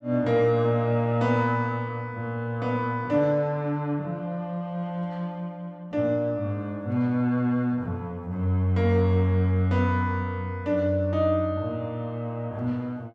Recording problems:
none

